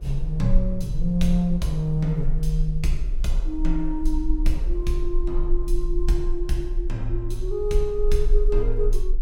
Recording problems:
low-frequency rumble; below 36 Hz, strongest tone 22 Hz, SNR 1 dB
wind noise; below 300 Hz, SNR 22 dB

